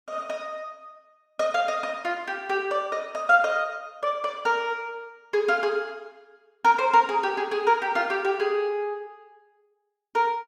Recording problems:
none

